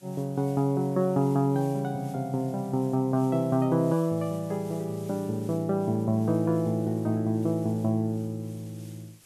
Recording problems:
background hiss; slope 0 dB per octave, SNR 25 dB

